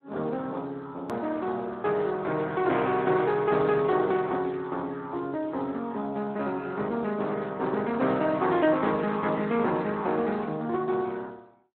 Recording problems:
phone line; 170 Hz to 3.8 kHz, Speex
click at an edit; at 1 s

